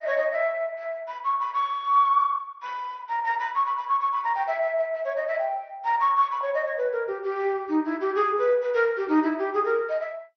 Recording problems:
lossy codec; MP2, log-spectral distance 2 dB, nothing above 5 kHz

